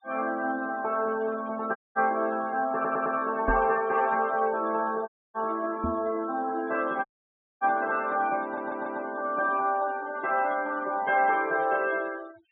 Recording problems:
treble cut off; nothing above 3.8 kHz
denoising artefacts; signal-to-artefact ratio 20 dB
dropout; at 2 s, at 5 s and at 7 s for 0.5 s
stutter; at 2.5 s and at 8.5 s
microphone thump; at 3.5 s and at 6 s; peak 0 dB vs average level

